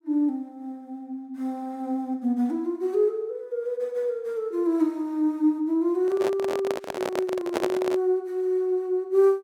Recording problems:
microphone handling noise; from 6 to 8 s; peak +3 dB vs average level

